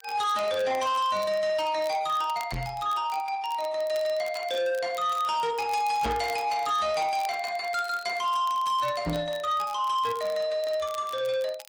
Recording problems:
lossy compression; AAC, then Opus, log-spectral distance 2 dB
distorted audio; soft clipping, signal-to-distortion ratio 11 dB
crackling; vinyl, SNR 21 dB
microphone thump; at 2.5 s, at 6 s and at 9 s; peak 0 dB vs average level

